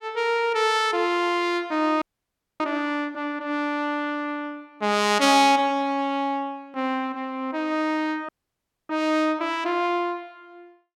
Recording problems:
audio freezing; at 2 s for 0.5 s and at 8.5 s for 0.5 s

